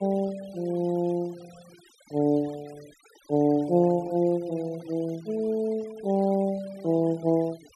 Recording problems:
denoising artefacts; signal-to-artefact ratio 25 dB

